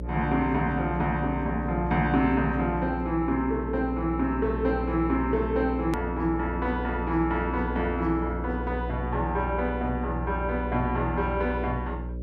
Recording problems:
hum; 60 Hz, harmonics up to 600 Hz, SNR 6 dB
hard cut with a click; at 6 s

